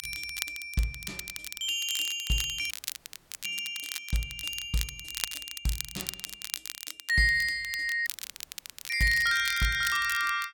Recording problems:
crackling; vinyl, SNR 9 dB
dropout; at 2.5 s for 0.5 s and at 8 s for 1 s

